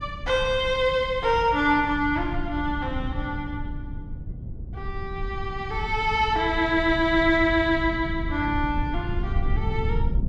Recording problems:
rumble; below 100 Hz, SNR 9 dB

